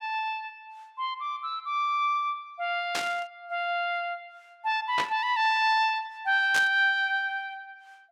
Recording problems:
static burst; at 3 s, at 5 s and at 6.5 s; peak 0 dB vs average level

